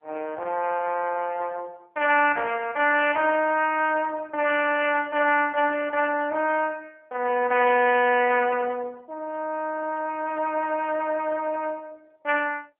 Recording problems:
phone line; 340 Hz to 3.2 kHz, AMR-NB

